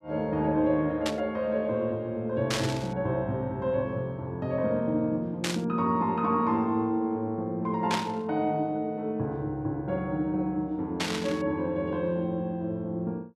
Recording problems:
burst of static; 5 times, first at 1 s; peak +3 dB vs average level

